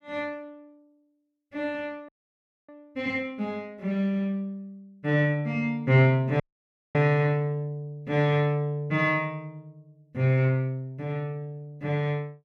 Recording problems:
audio cutting out; at 2 s for 0.5 s and at 6.5 s for 0.5 s

